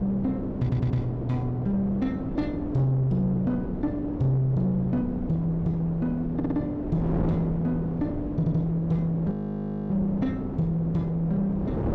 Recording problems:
distortion; soft clipping, signal-to-distortion ratio 11 dB
wind on the microphone; below 390 Hz, SNR 6 dB
audio stuttering; at 0.5 s, at 6.5 s and at 8.5 s
frozen audio; at 9.5 s for 0.5 s

